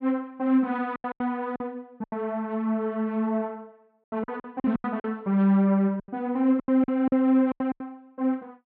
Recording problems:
treble missing; nothing above 5.5 kHz
packet loss; 13% of the sound replaced, filled with silence

